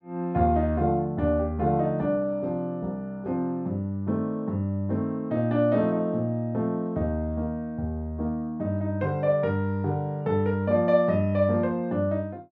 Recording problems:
none

